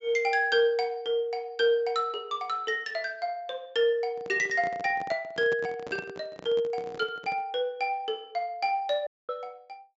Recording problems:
treble missing; nothing above 8 kHz
handling noise; from 4 to 7.5 s; peak -7 dB vs average level
audio cutting out; at 9 s

